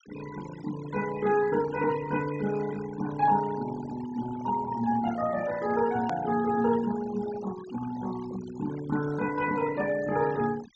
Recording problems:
low-pass filter; nothing above 8 kHz
noise reduction artefacts; signal-to-artefact ratio 15 dB
edit click; at 6 s

